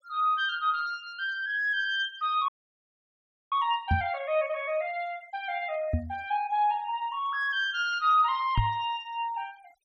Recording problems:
denoising artefacts; signal-to-artefact ratio 26 dB
frozen audio; at 2.5 s for 1 s
microphone thump; at 4 s, at 6 s and at 8.5 s; peak +5 dB vs average level

